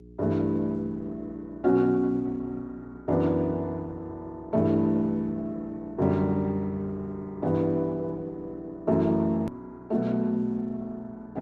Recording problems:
lossy compression; Opus, log-spectral distance 2 dB, nothing above 13.1 kHz
electrical hum; 60 Hz, harmonics up to 420 Hz, SNR 21 dB
edit click; at 9.5 s

